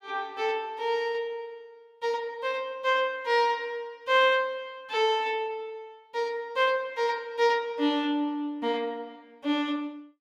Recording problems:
none

